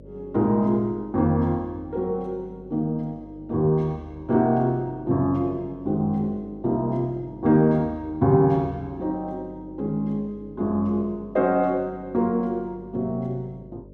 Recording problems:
electrical hum; 50 Hz, harmonics up to 600 Hz, SNR 21 dB

